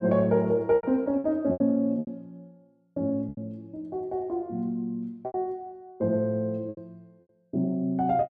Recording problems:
lost packets; 8% of the sound replaced, filled with repeated pitch periods

